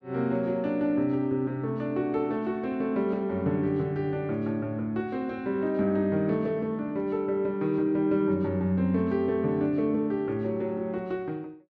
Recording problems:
none

